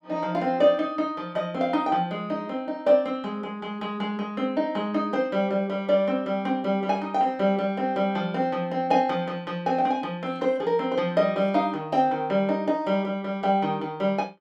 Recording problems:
none

